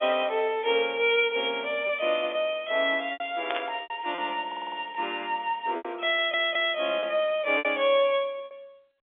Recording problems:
phone line; 280 Hz to 3.6 kHz, G.711
lost packets; 6% of the sound replaced, filled with repeated pitch periods
static burst; at 3.5 s; peak -2 dB vs average level
stutter; at 4.5 s and at 6 s

